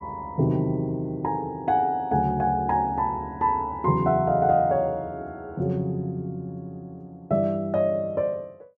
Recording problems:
none

